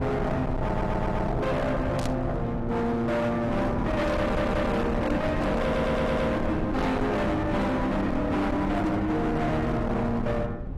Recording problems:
lossy compression; AAC, log-spectral distance 2 dB, nothing above 13.1 kHz
distortion; hard clipping, signal-to-distortion ratio 6 dB
low-frequency rumble; below 380 Hz, SNR 6 dB
stutter; at 0.5 s, at 4 s and at 5.5 s
burst of static; at 2 s; peak -8 dB vs average level

